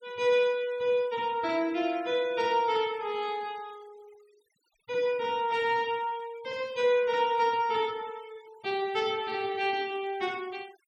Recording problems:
denoising artefacts; signal-to-artefact ratio 25 dB

